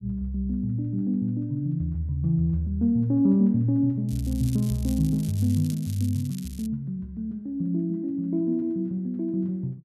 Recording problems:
crackle; from 4 to 6.5 s; loose cable, SNR 18 dB

